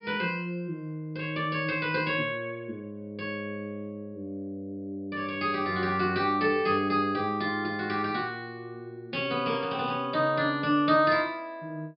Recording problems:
low-pass filter; nothing above 5.5 kHz

